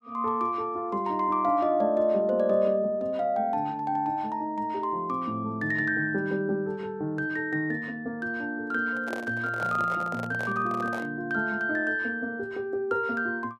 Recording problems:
handling noise; from 9 to 11 s; peak -5 dB vs average level

